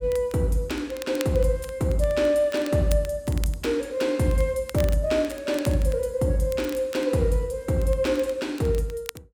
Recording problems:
crackling; vinyl, SNR 18 dB

